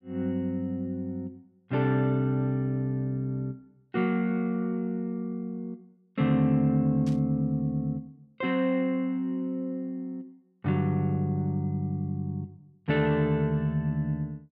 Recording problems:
burst of static; at 7 s; peak -15 dB vs average level

